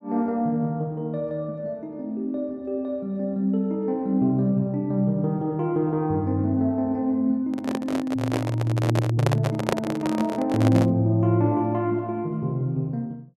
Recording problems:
microphone handling noise; from 7.5 to 11 s; peak +4 dB vs average level

